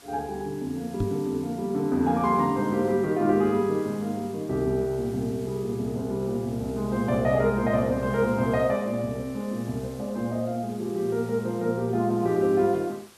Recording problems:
background hiss; slope -2 dB per octave, SNR 23 dB
microphone thump; at 1 s; peak +1 dB vs average level

